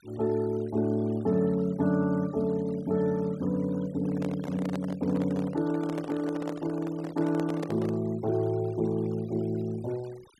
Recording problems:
noise reduction artefacts; signal-to-artefact ratio 23 dB
handling noise; from 4 to 8 s; peak -3 dB vs average level

